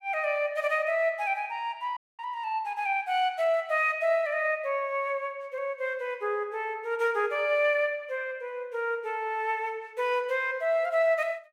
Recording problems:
audio cutting out; at 2 s

